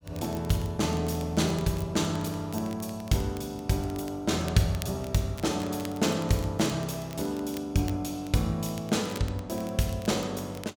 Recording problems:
crackling; vinyl, SNR 19 dB

